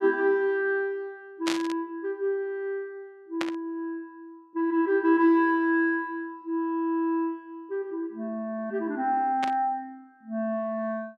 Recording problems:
static burst; at 1.5 s, at 3.5 s and at 9.5 s; peak +1 dB vs average level

